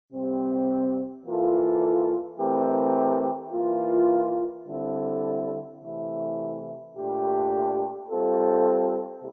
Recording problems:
codec artefacts; MP2, log-spectral distance 2 dB

